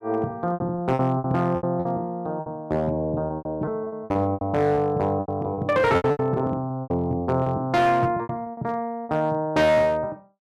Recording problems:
distortion; hard clipping, uneven, signal-to-distortion ratio 11 dB
lost packets; 14% of the sound replaced, filled with repeated pitch periods

